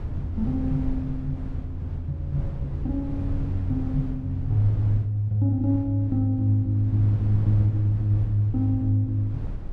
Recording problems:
rumble; below 120 Hz, SNR 10 dB

